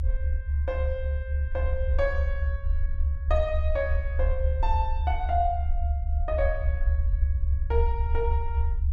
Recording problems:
rumble; below 72 Hz, SNR -4 dB

